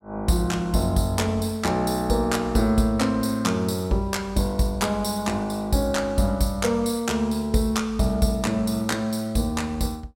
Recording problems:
none

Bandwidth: 16.5 kHz